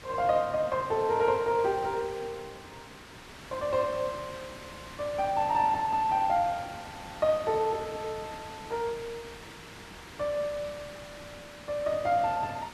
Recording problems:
background hiss; SNR 16 dB

